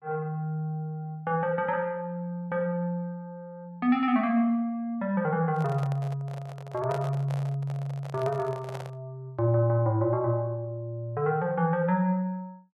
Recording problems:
handling noise; from 5.5 to 9 s; peak -5 dB vs average level

